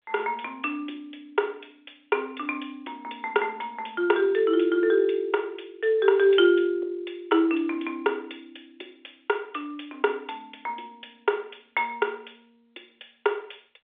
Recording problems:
phone line; 300 Hz to 3.6 kHz, G.711

